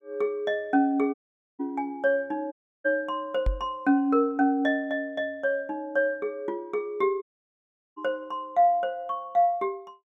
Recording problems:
audio cutting out; at 1 s, at 2.5 s and at 7 s for 0.5 s
microphone thump; at 3.5 s; peak +3 dB vs average level

